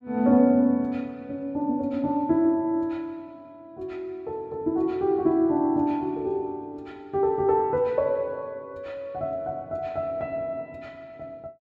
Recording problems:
none

